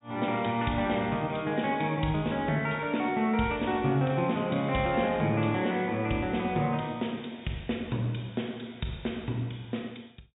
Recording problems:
low-pass filter; nothing above 4 kHz

